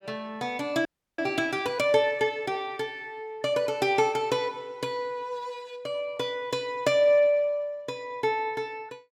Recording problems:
frozen audio; at 1 s

